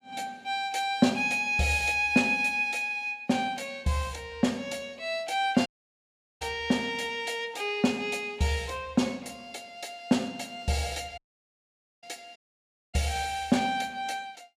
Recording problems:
audio cutting out; at 5.5 s for 1 s, at 11 s for 1 s and at 12 s for 0.5 s

